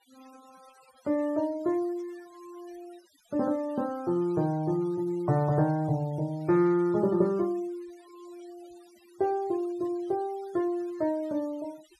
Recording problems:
noise reduction artefacts; signal-to-artefact ratio 26 dB

